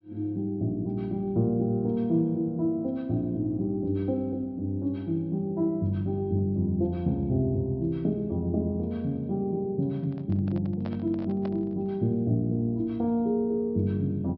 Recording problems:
treble missing; nothing above 5.5 kHz
handling noise; from 10 to 12 s; peak -9 dB vs average level

